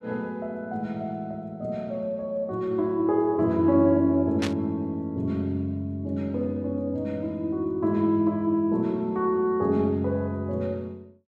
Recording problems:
burst of static; at 4.5 s; peak -1 dB vs average level

